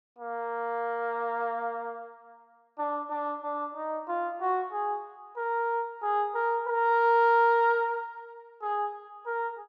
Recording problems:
none

